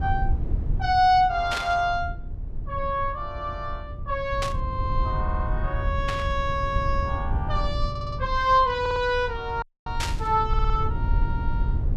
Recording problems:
low-frequency rumble; below 88 Hz, SNR 5 dB
burst of static; 4 times, first at 1.5 s; peak 0 dB vs average level
stutter; 4 times, first at 5 s
audio cutting out; at 9.5 s

